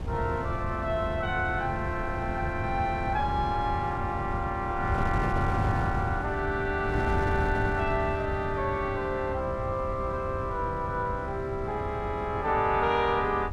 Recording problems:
wind on the microphone; below 200 Hz, SNR 5 dB

